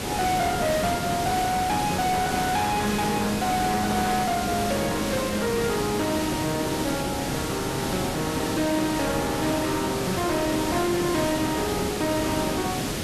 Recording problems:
distorted audio; soft clipping, signal-to-distortion ratio 10 dB
hiss; SNR 3 dB

